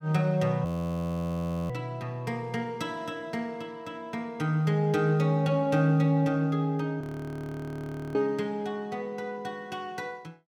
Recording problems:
frozen audio; at 0.5 s for 1 s and at 7 s for 1 s

